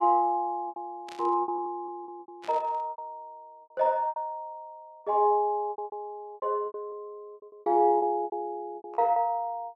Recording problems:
lost packets; 14% of the sound replaced, filled with repeated pitch periods
burst of static; at 1 s and at 2.5 s; peak -13 dB vs average level

